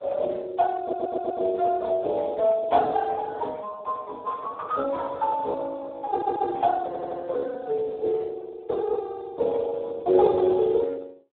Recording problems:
phone line; 320 Hz to 2.1 kHz, Speex
audio stuttering; at 1 s, at 6 s and at 7 s

